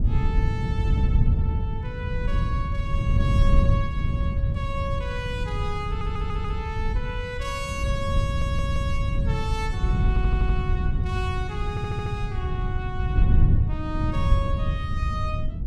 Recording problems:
wind on the microphone; below 110 Hz, SNR -7 dB
stutter; 4 times, first at 6 s

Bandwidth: 16 kHz